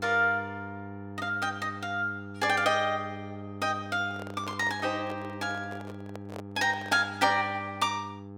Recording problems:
electrical hum; 50 Hz, harmonics up to 1.3 kHz, SNR 13 dB
microphone handling noise; from 4 to 7 s; peak -7 dB vs average level

